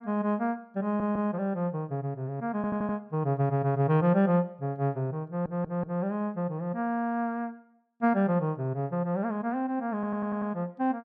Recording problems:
audio stuttering; 4 times, first at 1 s

